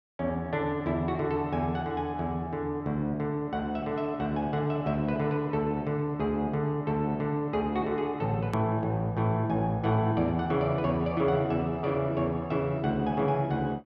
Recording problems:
click at an edit; at 8.5 s

